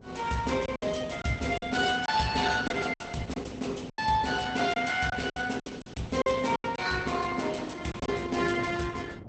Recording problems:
codec artefacts; Opus, log-spectral distance 5 dB, nothing above 8 kHz
wind on the microphone; below 380 Hz, SNR 16 dB
packet loss; 8% of the sound replaced, filled with silence

